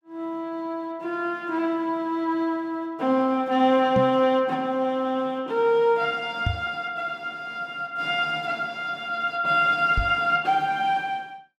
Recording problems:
knock on the microphone; at 4 s, at 6.5 s and at 10 s; peak +2 dB vs average level

